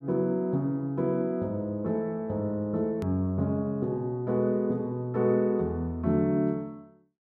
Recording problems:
edit click; at 3 s

